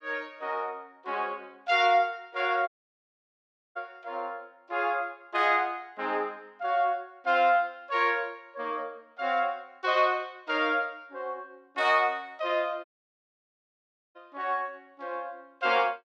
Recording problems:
audio cutting out; at 2.5 s for 1 s and at 13 s for 1.5 s

